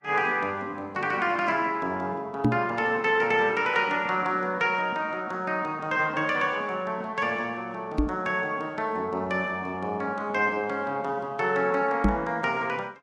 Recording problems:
lossy codec; Vorbis, log-spectral distance 2 dB
knock on the microphone; at 2.5 s, at 8 s and at 12 s; peak +7 dB vs average level

